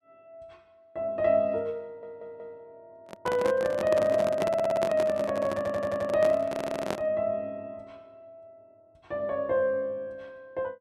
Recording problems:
stutter; 4 times, first at 2 s
handling noise; from 3 to 7 s; peak +1 dB vs average level

